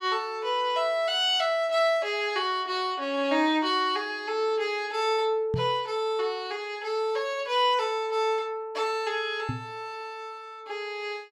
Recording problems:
knock on the microphone; at 5.5 s and at 9.5 s; peak 0 dB vs average level

